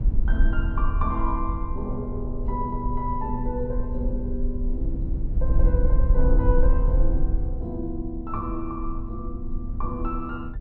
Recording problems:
rumble; below 54 Hz, SNR -3 dB

